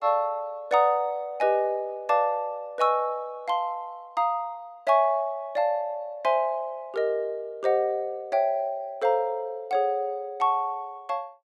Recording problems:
none

